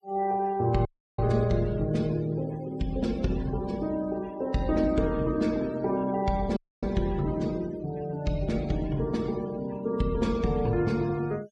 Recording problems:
denoising artefacts; signal-to-artefact ratio 22 dB
audio cutting out; at 1 s and at 6.5 s

